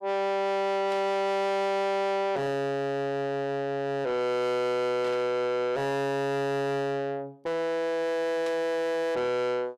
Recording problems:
distortion; soft clipping, signal-to-distortion ratio 6 dB
static burst; at 1 s, at 5 s and at 8.5 s; peak -11 dB vs average level

